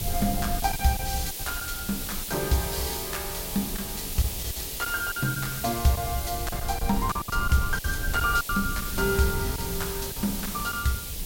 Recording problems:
background hiss; SNR 4 dB
rumble; below 94 Hz, SNR 9 dB
lost packets; 7% of the sound replaced, filled with silence

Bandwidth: 16.5 kHz